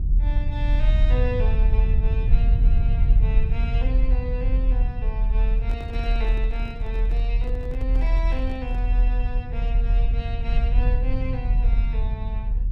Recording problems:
rumble; below 54 Hz, strongest tone 42 Hz, SNR -11 dB
microphone handling noise; from 5.5 to 9 s; peak -4 dB vs average level

